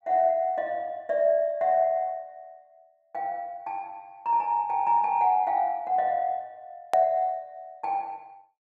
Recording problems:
edit click; at 7 s

